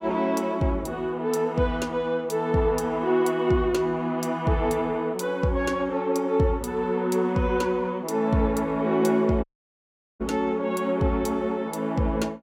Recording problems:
dropout; at 9.5 s for 1 s

